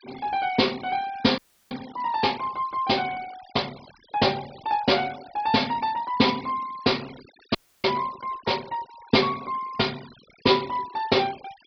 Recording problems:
treble cut off; nothing above 5.5 kHz
denoising artefacts; signal-to-artefact ratio 19 dB
dropout; at 1.5 s and at 7.5 s

